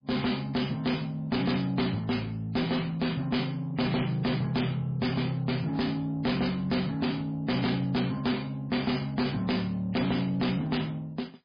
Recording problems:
lossy codec; MP3, log-spectral distance 5 dB, nothing above 5 kHz
distorted audio; soft clipping, signal-to-distortion ratio 7 dB

